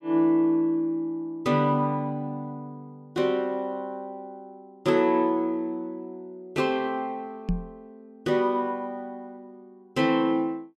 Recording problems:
microphone bump; at 7.5 s; peak +3 dB vs average level

